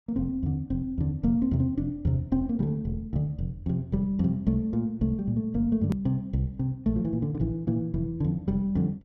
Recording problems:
edit click; at 6 s

